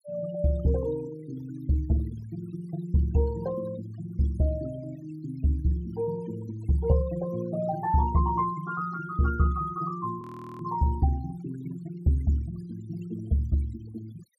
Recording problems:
denoising artefacts; signal-to-artefact ratio 18 dB
audio freezing; at 10 s

